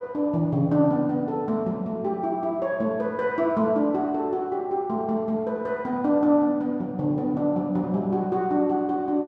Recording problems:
none

